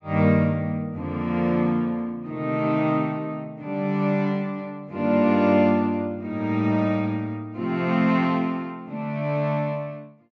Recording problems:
treble cut off; nothing above 8 kHz

